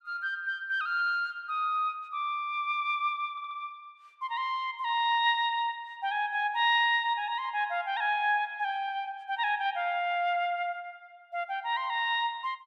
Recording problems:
audio stuttering; at 3.5 s

